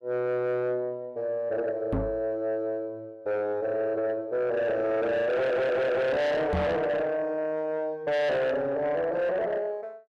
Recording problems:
distortion; soft clipping, signal-to-distortion ratio 7 dB
microphone bump; at 2 s and at 6.5 s; peak +4 dB vs average level
audio stuttering; at 5.5 s

